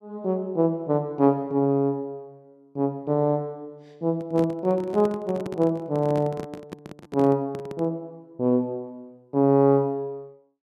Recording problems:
handling noise; from 4 to 8 s; peak -5 dB vs average level

